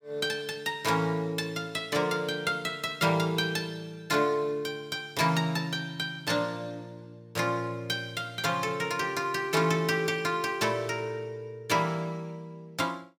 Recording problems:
none

